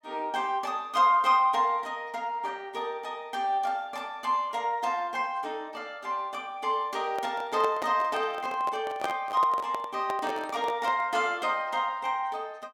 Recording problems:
handling noise; from 7 to 11 s; peak 0 dB vs average level

